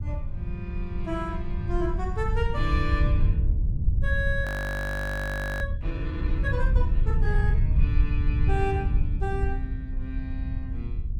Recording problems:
wind on the microphone; below 84 Hz, SNR -5 dB
audio freezing; at 4.5 s for 1 s

